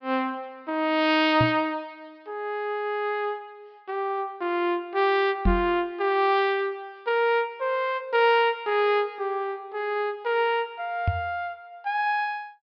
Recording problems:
low-pass filter; nothing above 5.5 kHz
microphone bump; at 1.5 s, at 5.5 s and at 11 s; peak +5 dB vs average level

